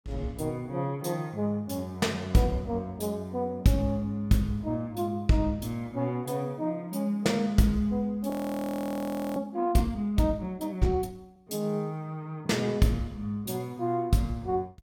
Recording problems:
frozen audio; at 8.5 s for 1 s

